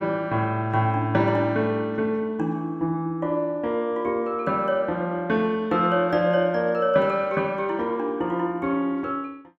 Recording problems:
none

